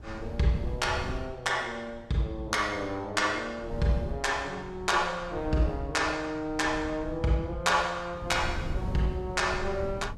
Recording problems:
wind on the microphone; below 130 Hz, SNR 11 dB

